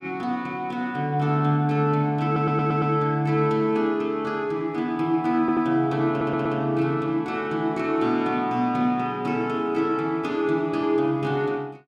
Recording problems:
stutter; at 2.5 s, at 5.5 s and at 6 s

